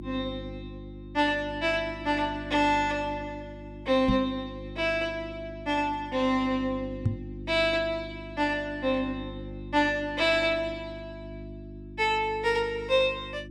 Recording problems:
hum; 50 Hz, harmonics up to 350 Hz, SNR 14 dB
knock on the microphone; at 4 s and at 7 s; peak +5 dB vs average level

